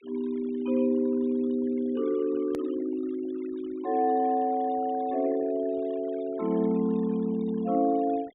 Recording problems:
treble missing; nothing above 4 kHz
denoising artefacts; signal-to-artefact ratio 25 dB
hard cut with a click; at 2.5 s

